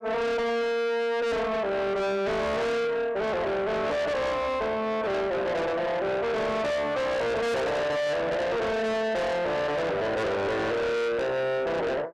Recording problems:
distorted audio; soft clipping, signal-to-distortion ratio 6 dB

